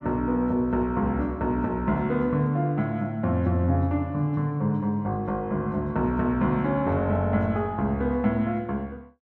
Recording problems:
none

